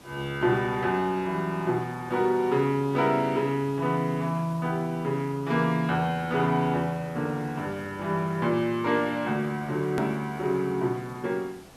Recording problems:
background hiss; slope -5 dB per octave, SNR 22 dB
hard cut with a click; at 10 s

